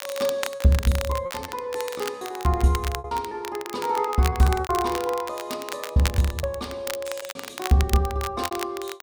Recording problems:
crackle; vinyl, SNR 10 dB
packet loss; 11% of the sound replaced, filled with repeated pitch periods

